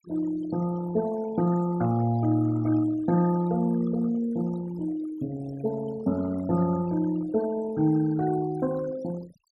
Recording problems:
noise reduction artefacts; signal-to-artefact ratio 18 dB

